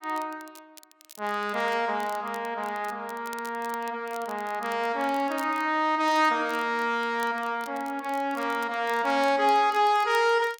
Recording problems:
crackle; vinyl, SNR 23 dB

